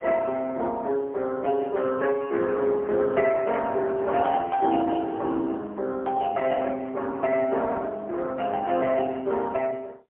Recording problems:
telephone audio; 280 Hz to 3.2 kHz, AMR-NB, then MP3

